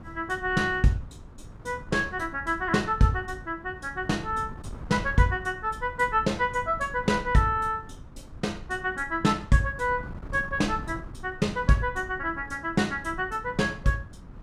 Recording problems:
wind on the microphone; below 180 Hz, SNR 16 dB

